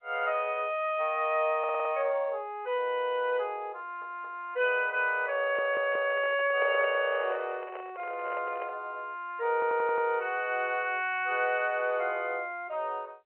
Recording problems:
phone line; 370 Hz to 3.1 kHz, G.711
audio stuttering; 4 times, first at 1.5 s
handling noise; from 5.5 to 9 s; peak -7 dB vs average level

